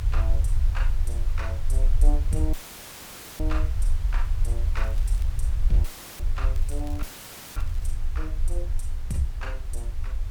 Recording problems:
hum; 50 Hz, harmonics up to 1 kHz, SNR 19 dB
hiss; SNR 13 dB
rumble; below 56 Hz, strongest tone 22 Hz, SNR -8 dB
dropout; at 2.5 s for 1 s, at 6 s and at 7 s for 0.5 s; filled with static
crackling; at 5 s and from 6.5 to 8 s; loose cable, SNR 17 dB

